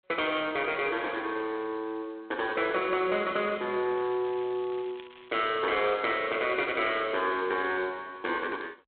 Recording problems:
phone line; 320 Hz to 3.7 kHz, G.726
crackling; from 4 to 7 s; loose cable, SNR 23 dB

